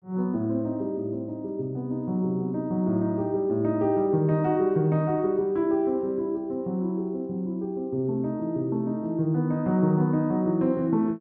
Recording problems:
treble missing; nothing above 7.2 kHz

